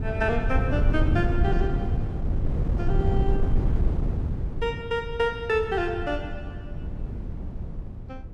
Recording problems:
wind on the microphone; below 120 Hz, SNR 0 dB

